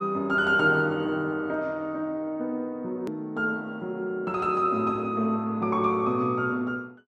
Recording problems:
click at an edit; at 3 s

